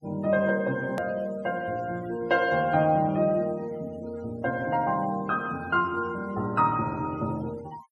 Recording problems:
noise reduction artefacts; signal-to-artefact ratio 25 dB
edit click; at 1 s

